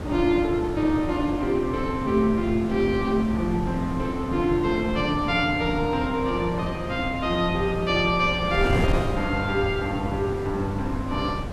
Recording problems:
wind noise; below 370 Hz, SNR 7 dB

